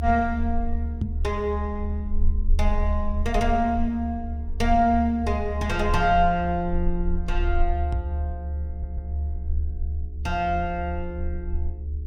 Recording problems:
electrical hum; 60 Hz, harmonics up to 420 Hz, SNR 23 dB
rumble; below 74 Hz, SNR 4 dB
microphone thump; at 1 s and at 8 s; peak +3 dB vs average level
audio stuttering; at 8.5 s

